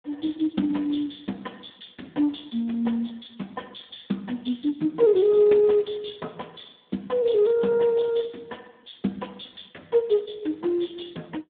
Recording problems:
phone line; 150 Hz to 3.7 kHz, Speex

